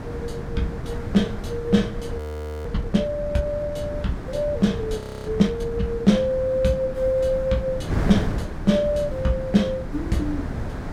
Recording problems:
wind noise; below 280 Hz, SNR 8 dB
audio freezing; at 2 s and at 5 s

